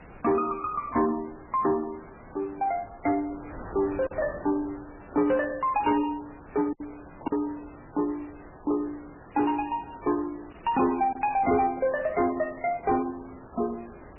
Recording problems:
lossy codec; MP3, log-spectral distance 8 dB, nothing above 2.5 kHz
distortion; soft clipping, signal-to-distortion ratio 10 dB
background hiss; SNR 28 dB
wind on the microphone; below 1.1 kHz, SNR 19 dB
lost packets; 1.6% of the sound replaced, filled with silence

